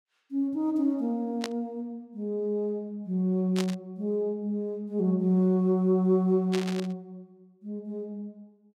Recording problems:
static burst; at 1.5 s, at 3.5 s and at 6.5 s; peak -1 dB vs average level

